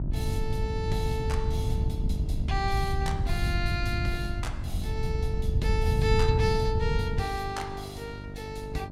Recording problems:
hum; 50 Hz, harmonics up to 1 kHz, SNR 10 dB
wind on the microphone; below 110 Hz, SNR -3 dB

